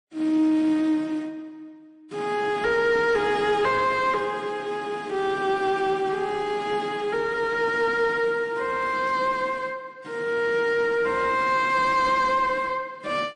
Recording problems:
lossy compression; MP3, then AAC, log-spectral distance 2 dB, nothing above 8.7 kHz
distorted audio; soft clipping, signal-to-distortion ratio 11 dB

